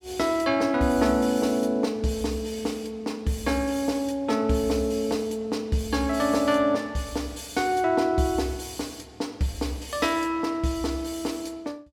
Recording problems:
none

